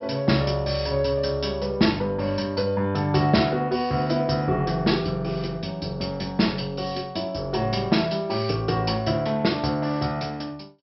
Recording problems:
treble missing; nothing above 5.4 kHz

